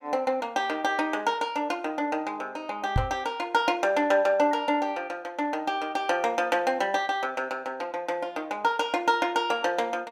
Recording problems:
knock on the microphone; at 3 s; peak +5 dB vs average level

